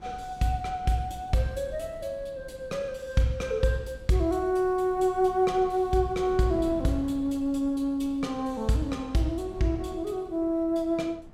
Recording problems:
wind on the microphone; below 240 Hz, SNR 19 dB

